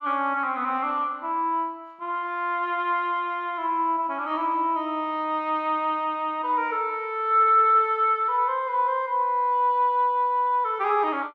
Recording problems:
none

